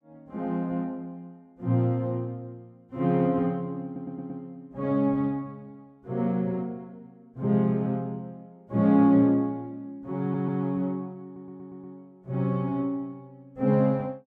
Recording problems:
stutter; at 4 s, at 10 s and at 11 s

